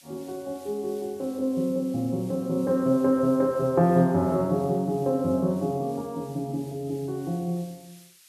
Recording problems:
hiss; slope +5 dB per octave, SNR 25 dB

